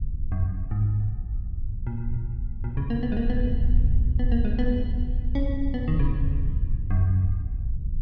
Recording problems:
low-frequency rumble; below 72 Hz, SNR 0 dB

